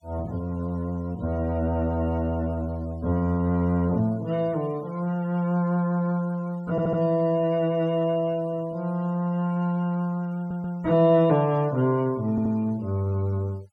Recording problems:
denoising artefacts; signal-to-artefact ratio 27 dB
stutter; at 6.5 s, at 10 s and at 12 s

